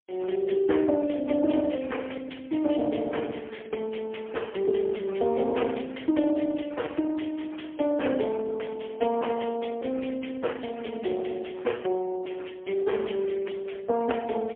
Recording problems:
phone line; 240 Hz to 3.4 kHz, AMR-NB, then MP3

